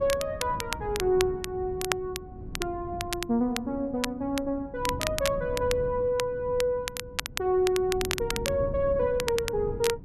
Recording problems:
wind noise; below 210 Hz, SNR 12 dB
crackle; vinyl, SNR 7 dB

